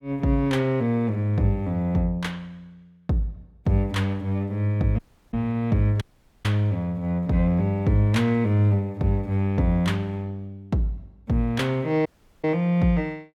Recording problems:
dropout; at 5 s, at 6 s and at 12 s

